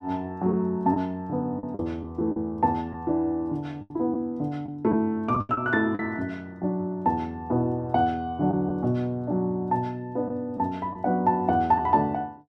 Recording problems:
lost packets; 4% of the sound replaced, filled with the last packet

